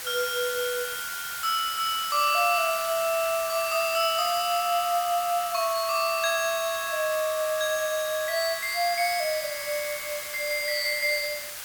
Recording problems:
background hiss; SNR 8 dB

